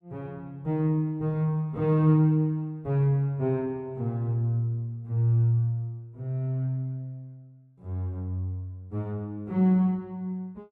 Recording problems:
none

